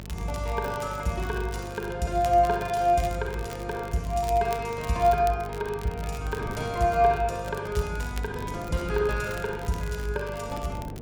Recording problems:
hum; 50 Hz, harmonics up to 850 Hz, SNR 14 dB
wind noise; below 400 Hz, SNR 17 dB
crackling; vinyl, SNR 19 dB

